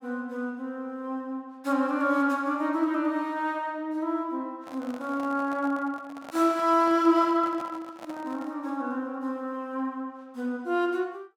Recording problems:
microphone handling noise; from 4.5 to 8.5 s; peak -9 dB vs average level

